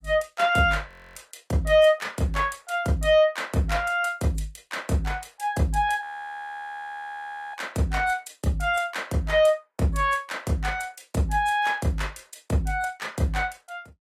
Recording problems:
lossy codec; AAC, log-spectral distance 3 dB, nothing above 14.7 kHz
audio freezing; at 1 s and at 6 s for 1.5 s

